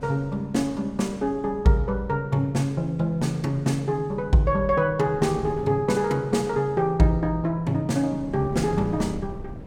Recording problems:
wind noise; below 280 Hz, SNR 16 dB

